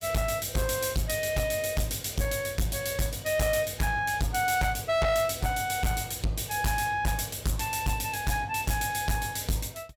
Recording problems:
distortion; hard clipping, signal-to-distortion ratio 8 dB

